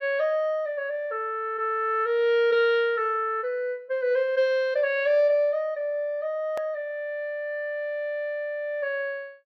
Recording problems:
edit click; at 6.5 s

